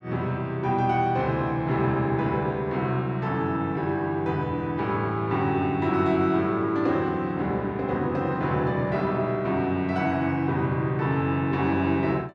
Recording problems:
none

